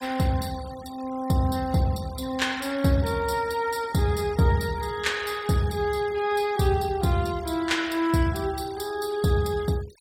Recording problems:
denoising artefacts; signal-to-artefact ratio 21 dB

